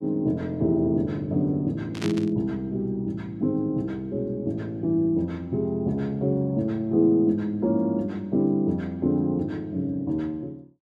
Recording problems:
static burst; at 2 s; peak -5 dB vs average level

